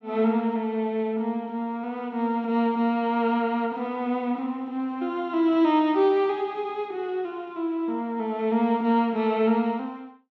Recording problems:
none

